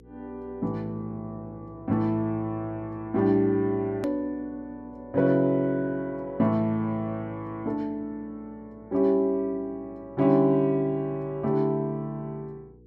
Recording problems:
electrical hum; 60 Hz, harmonics up to 480 Hz, SNR 25 dB
edit click; at 4 s

